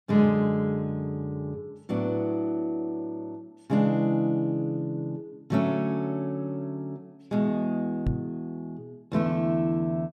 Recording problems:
microphone thump; at 8 s; peak +4 dB vs average level

